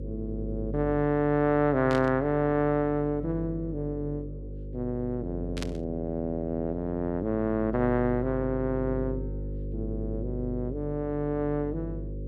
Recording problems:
electrical hum; 50 Hz, harmonics up to 550 Hz, SNR 9 dB
burst of static; at 2 s and at 5.5 s; peak -4 dB vs average level

